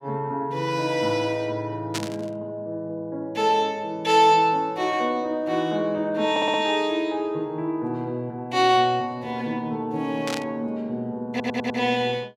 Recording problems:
static burst; at 2 s and at 10 s; peak -1 dB vs average level
stutter; at 6.5 s and at 11 s

